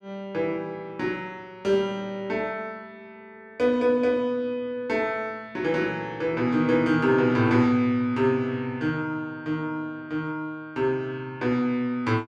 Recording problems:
none

